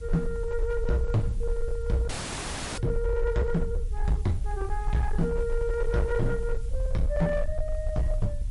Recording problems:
lossy codec; MP3, log-spectral distance 2 dB
distortion; hard clipping, uneven, signal-to-distortion ratio 11 dB
hiss; slope +1 dB per octave, SNR 27 dB
low-frequency rumble; below 56 Hz, strongest tone 22 Hz, SNR 3 dB
audio freezing; at 2 s for 0.5 s

